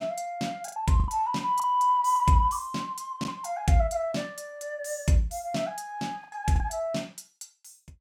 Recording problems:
lost packets; 6% of the sound replaced, filled with the last packet

